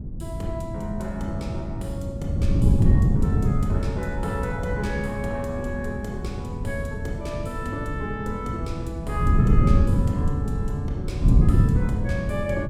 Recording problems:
wind noise; below 160 Hz, SNR -6 dB

